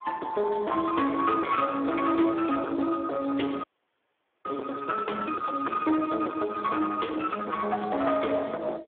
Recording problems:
telephone audio; 280 Hz to 2.2 kHz, Speex
distortion; soft clipping, signal-to-distortion ratio 9 dB
audio freezing; at 3.5 s for 1 s

